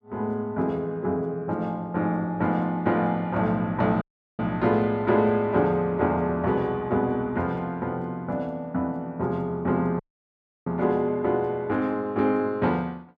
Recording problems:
dropout; at 4 s and at 10 s for 0.5 s

